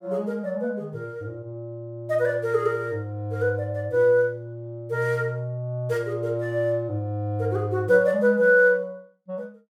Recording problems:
none

